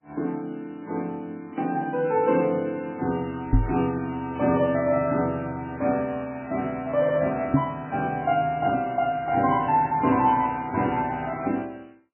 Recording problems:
lossy compression; MP3, log-spectral distance 3 dB, nothing above 2.7 kHz
microphone bump; at 3.5 s and at 7.5 s; peak +8 dB vs average level

